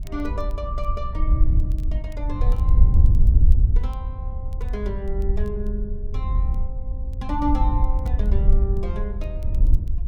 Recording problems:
wind on the microphone; below 66 Hz, SNR -9 dB
crackle; vinyl, SNR 27 dB

